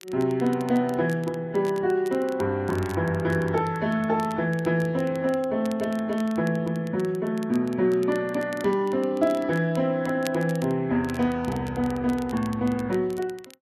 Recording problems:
lossy compression; Vorbis, log-spectral distance 2 dB
crackle; vinyl, SNR 22 dB

